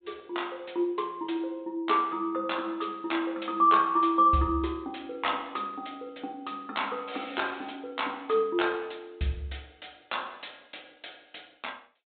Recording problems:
treble missing; nothing above 4 kHz

